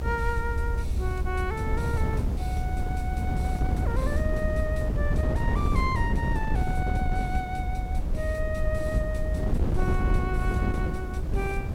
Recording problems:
hiss; slope +3 dB per octave, SNR 23 dB
low-frequency rumble; below 72 Hz, SNR 0 dB
wind on the microphone; below 180 Hz, SNR -3 dB

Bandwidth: 16.5 kHz